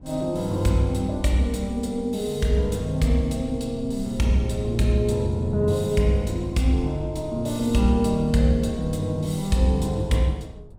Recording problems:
low-frequency rumble; below 120 Hz, SNR 19 dB

